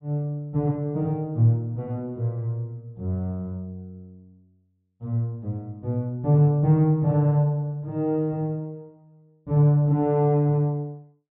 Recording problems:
treble cut off; nothing above 3.9 kHz

